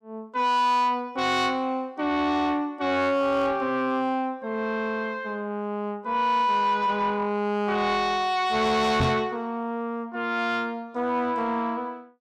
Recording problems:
distortion; soft clipping, signal-to-distortion ratio 11 dB
microphone thump; at 9 s; peak +5 dB vs average level

